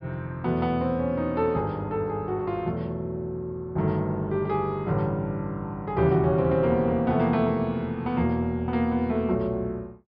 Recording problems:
low-pass filter; nothing above 5.5 kHz

